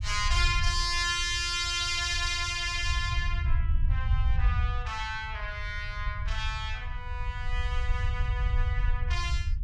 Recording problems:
low-frequency rumble; below 74 Hz, SNR 2 dB

